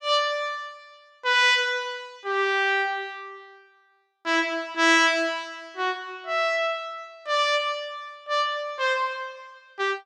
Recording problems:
none

